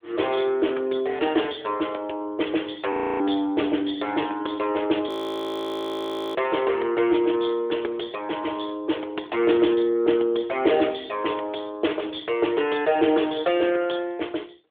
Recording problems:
telephone audio; 260 Hz to 3.6 kHz, AMR-NB
frozen audio; at 3 s and at 5 s for 1.5 s

